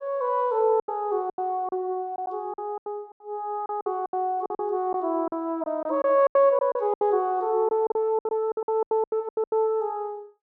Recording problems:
lost packets; 15% of the sound replaced, filled with silence

